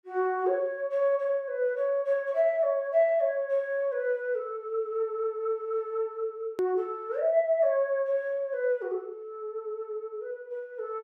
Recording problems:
hard cut with a click; at 6.5 s

